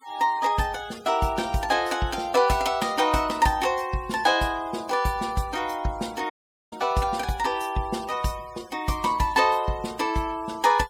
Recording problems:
denoising artefacts; signal-to-artefact ratio 21 dB
audio cutting out; at 6.5 s

